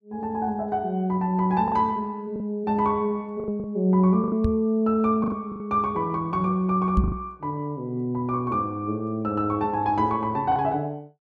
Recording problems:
packet loss; 5% of the sound replaced, filled with the last packet
knock on the microphone; at 4.5 s and at 7 s; peak +6 dB vs average level

